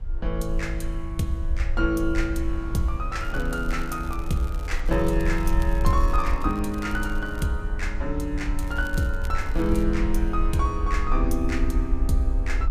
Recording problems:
low-frequency rumble; below 56 Hz, SNR 2 dB
wind on the microphone; below 420 Hz, SNR 20 dB
crackle; from 3 to 7.5 s and from 8.5 to 10 s; loose cable, SNR 21 dB

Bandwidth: 15 kHz